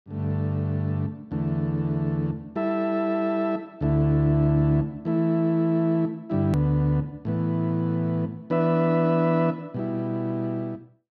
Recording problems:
click at an edit; at 6.5 s

